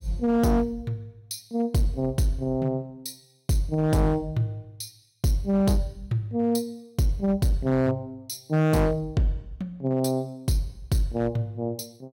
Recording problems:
distorted audio; hard clipping, signal-to-distortion ratio 12 dB

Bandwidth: 16.5 kHz